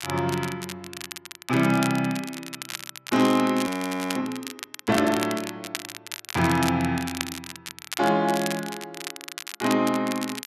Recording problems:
crackling; vinyl, SNR 10 dB
audio freezing; at 3.5 s

